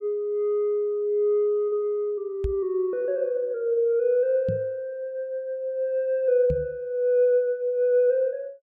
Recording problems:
knock on the microphone; at 2.5 s, at 4.5 s and at 6.5 s; peak -1 dB vs average level

